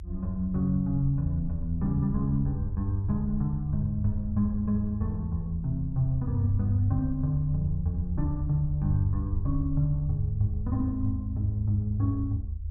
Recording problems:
low-frequency rumble; below 80 Hz, SNR 7 dB

